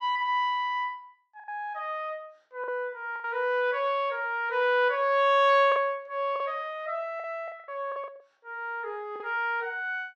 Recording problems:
packet loss; 6% of the sound replaced, filled with the last packet

